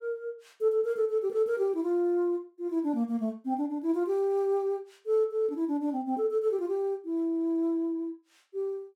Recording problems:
none

